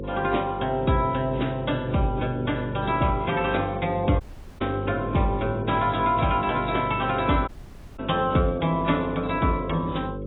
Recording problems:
codec artefacts; AAC, log-spectral distance 4 dB, nothing above 3.8 kHz
hum; 50 Hz, harmonics up to 550 Hz, SNR 10 dB
dropout; at 4 s and at 7.5 s for 0.5 s

